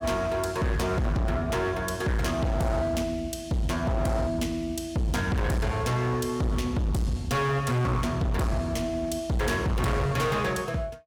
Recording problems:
distortion; hard clipping, signal-to-distortion ratio 7 dB

